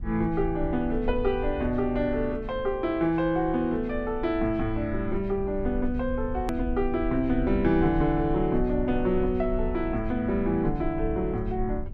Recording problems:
low-frequency rumble; below 60 Hz, SNR 10 dB
hard cut with a click; at 6.5 s

